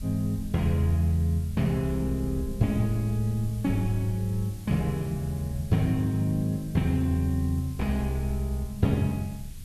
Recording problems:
hiss; slope +2 dB per octave, SNR 23 dB
wind noise; below 84 Hz, SNR 15 dB

